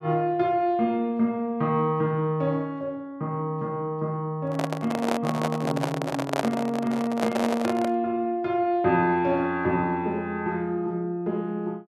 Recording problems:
microphone handling noise; from 4.5 to 8 s; peak +4 dB vs average level

